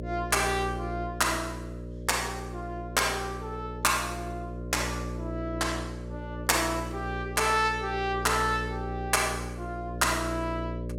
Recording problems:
electrical hum; 60 Hz, harmonics up to 600 Hz, SNR 8 dB

